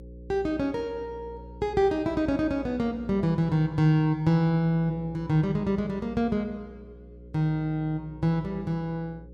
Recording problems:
hum; 60 Hz, harmonics up to 540 Hz, SNR 19 dB

